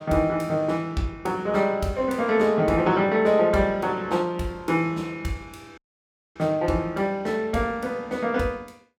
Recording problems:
dropout; at 6 s for 0.5 s

